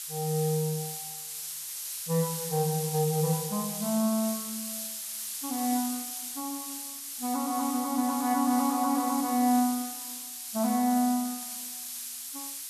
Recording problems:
background hiss; slope +6 dB per octave, SNR 6 dB

